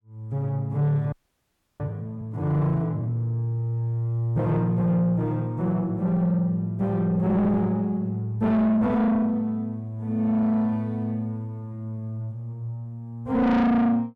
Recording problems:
distortion; soft clipping, signal-to-distortion ratio 6 dB
frozen audio; at 1 s for 0.5 s

